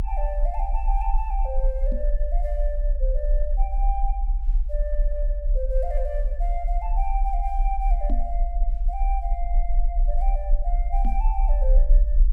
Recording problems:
low-frequency rumble; below 38 Hz, strongest tone 34 Hz, SNR -7 dB
microphone bump; at 2 s, at 8 s and at 11 s; peak +2 dB vs average level

